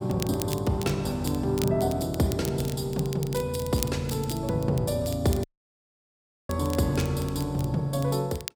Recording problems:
crackle; vinyl, SNR 14 dB
dropout; at 5.5 s for 1 s

